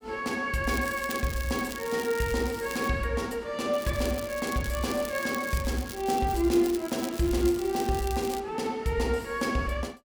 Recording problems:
crackling; from 0.5 to 3 s and from 3.5 to 8.5 s; loose cable, SNR 13 dB

